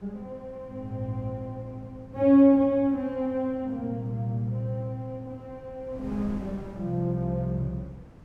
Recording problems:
wind on the microphone; below 330 Hz, SNR 21 dB

